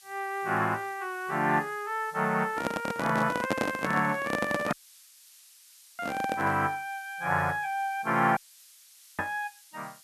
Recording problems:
hiss; slope +7 dB per octave, SNR 23 dB
handling noise; from 2.5 to 6.5 s; peak +4 dB vs average level
audio cutting out; at 4.5 s for 1.5 s and at 8.5 s for 1 s

